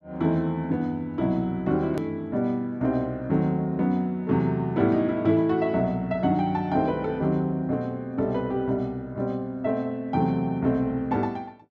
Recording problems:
hard cut with a click; at 2 s

